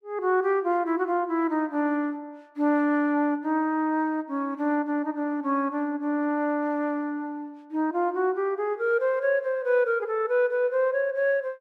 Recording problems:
none

